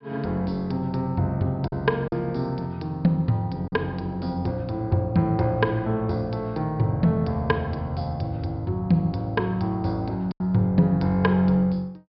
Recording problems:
treble missing; nothing above 5.2 kHz
packet loss; 1.7% of the sound replaced, filled with silence

